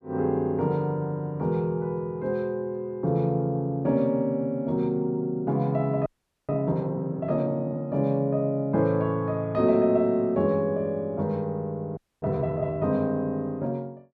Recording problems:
frozen audio; at 6 s and at 12 s

